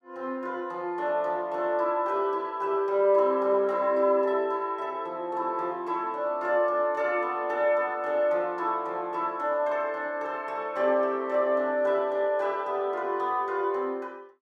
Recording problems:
none

